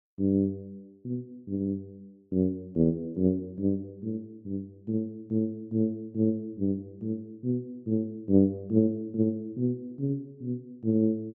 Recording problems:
none

